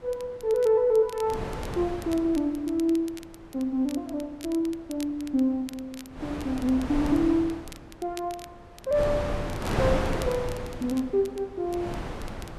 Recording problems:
wind on the microphone; below 750 Hz, SNR 6 dB
crackle; vinyl, SNR 21 dB

